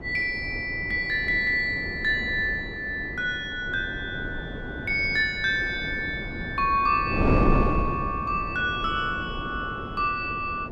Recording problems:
wind on the microphone; below 380 Hz, SNR 7 dB

